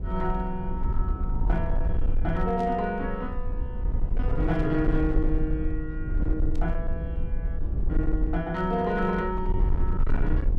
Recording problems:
distortion; hard clipping, uneven, signal-to-distortion ratio 12 dB
rumble; below 58 Hz, SNR 0 dB
burst of static; 4 times, first at 2.5 s; peak -14 dB vs average level

